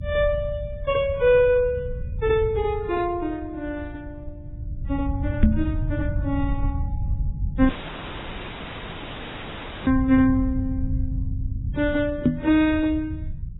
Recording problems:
lossy codec; AAC, then Vorbis, log-spectral distance 4 dB, nothing above 3.6 kHz
rumble; below 110 Hz, SNR 7 dB
knock on the microphone; at 5.5 s and at 12 s; peak +8 dB vs average level
dropout; at 7.5 s for 2 s

